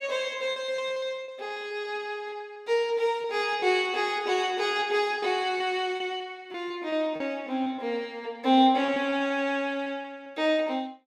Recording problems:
packet loss; 7% of the sound replaced, filled with repeated pitch periods

